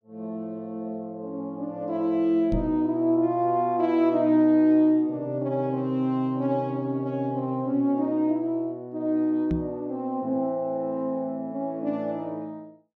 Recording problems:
microphone bump; at 2.5 s and at 9.5 s; peak 0 dB vs average level

